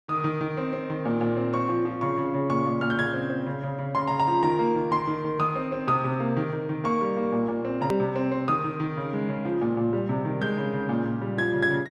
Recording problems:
click at an edit; at 8 s

